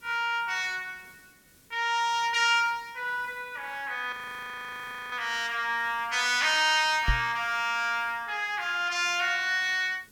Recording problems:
hiss; SNR 29 dB
frozen audio; at 4 s for 1 s
microphone bump; at 7 s; peak +3 dB vs average level

